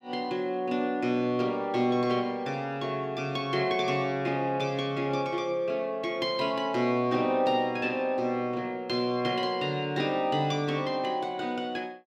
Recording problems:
none

